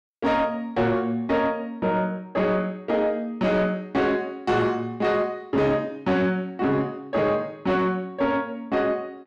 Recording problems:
distortion; soft clipping, signal-to-distortion ratio 12 dB

